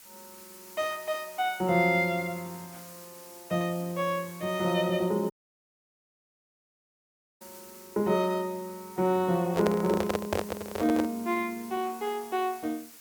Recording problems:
background hiss; slope +1 dB per octave, SNR 18 dB
dropout; at 5.5 s for 2 s
handling noise; from 9.5 to 11 s; peak +4 dB vs average level

